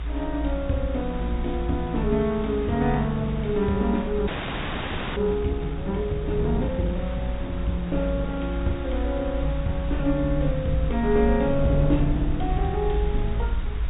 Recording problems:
treble missing; nothing above 4 kHz
hiss; SNR 17 dB
rumble; below 58 Hz, strongest tone 56 Hz, SNR 5 dB
wind on the microphone; below 260 Hz, SNR 12 dB
frozen audio; at 4.5 s for 1 s

